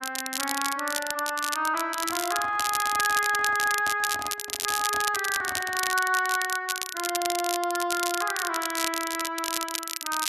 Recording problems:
crackling; vinyl, SNR 4 dB
handling noise; from 2 to 6 s; peak -9 dB vs average level

